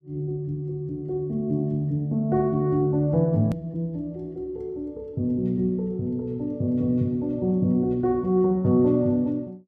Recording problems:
hard cut with a click; at 3.5 s

